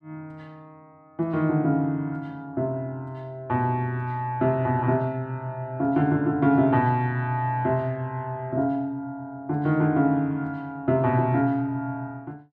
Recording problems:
none

